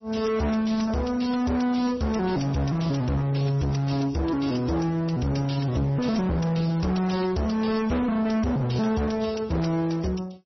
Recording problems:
lossy compression; AAC, then MP3, log-spectral distance 5 dB, nothing above 5.8 kHz
distortion; hard clipping, uneven, signal-to-distortion ratio 7 dB

